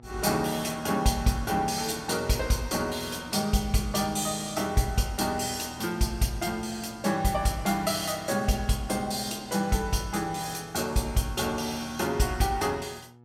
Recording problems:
hum; 60 Hz, harmonics up to 1.3 kHz, SNR 23 dB

